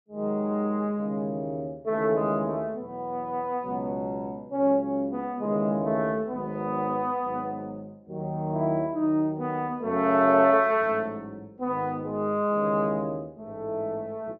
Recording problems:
treble missing; nothing above 8 kHz

